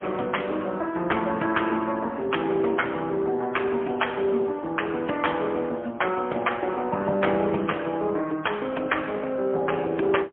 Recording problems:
phone line; 260 Hz to 3.3 kHz, AMR-NB, then MP3

